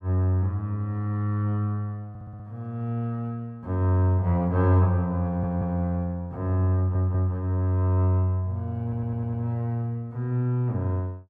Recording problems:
audio stuttering; 4 times, first at 2 s

